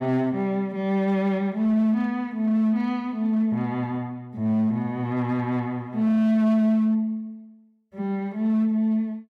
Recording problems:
distortion; hard clipping, signal-to-distortion ratio 12 dB

